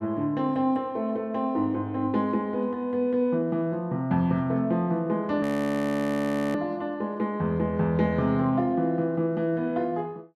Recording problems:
frozen audio; at 5.5 s for 1 s

